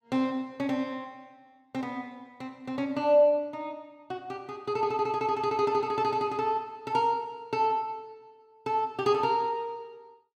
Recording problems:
none

